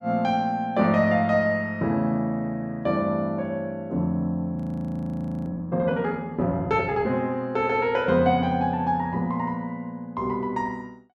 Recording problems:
audio freezing; at 4.5 s for 1 s

